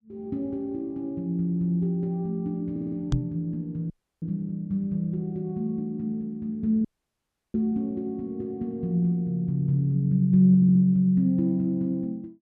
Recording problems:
audio stuttering; at 2.5 s and at 11 s
microphone bump; at 3 s; peak +4 dB vs average level
audio cutting out; at 4 s and at 7 s for 0.5 s

